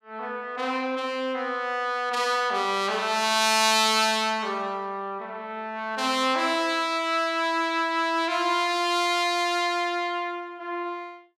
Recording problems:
none

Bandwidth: 15 kHz